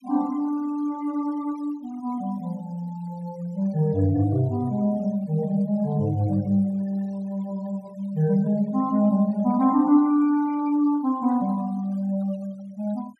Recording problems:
denoising artefacts; signal-to-artefact ratio 26 dB

